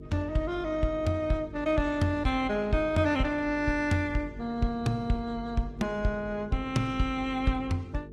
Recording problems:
codec artefacts; Opus, log-spectral distance 2 dB, nothing above 16.6 kHz
electrical hum; 50 Hz, harmonics up to 550 Hz, SNR 16 dB

